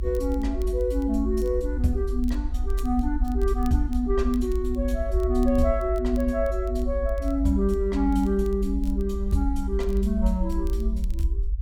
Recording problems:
low-frequency rumble; below 62 Hz, strongest tone 48 Hz, SNR 3 dB
crackle; vinyl, SNR 28 dB

